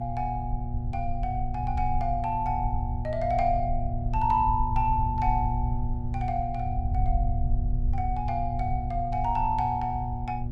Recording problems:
mains hum; 60 Hz, harmonics up to 600 Hz, SNR 6 dB
low-frequency rumble; below 74 Hz, SNR 4 dB

